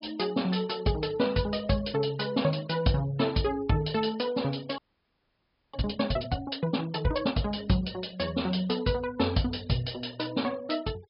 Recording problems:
low-pass filter; nothing above 5.5 kHz
noise reduction artefacts; signal-to-artefact ratio 23 dB
frozen audio; at 5 s for 1 s

